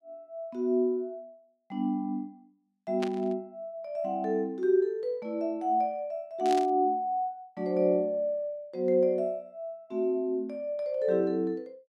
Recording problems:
burst of static; at 3 s and at 6.5 s; peak -4 dB vs average level

